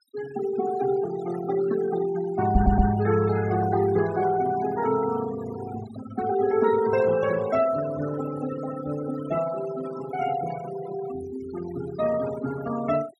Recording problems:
denoising artefacts; signal-to-artefact ratio 13 dB
audio stuttering; at 2.5 s
microphone bump; at 2.5 s; peak +9 dB vs average level

